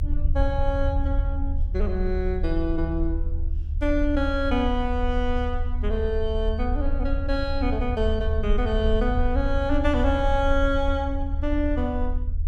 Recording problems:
low-frequency rumble; below 74 Hz, SNR 1 dB

